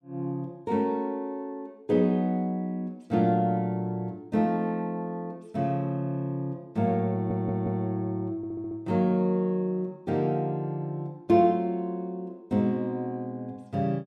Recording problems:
stutter; at 7 s and at 8.5 s

